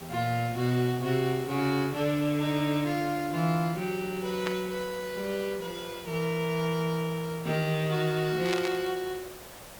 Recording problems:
hiss; SNR 15 dB
static burst; at 4.5 s and at 8.5 s; peak +1 dB vs average level

